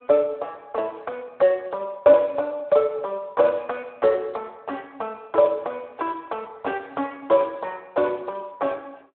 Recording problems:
phone line; 300 Hz to 3.3 kHz, Speex

